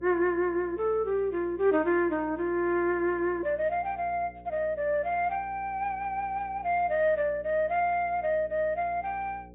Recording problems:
low-pass filter; nothing above 4 kHz
hum; 60 Hz, harmonics up to 540 Hz, SNR 22 dB

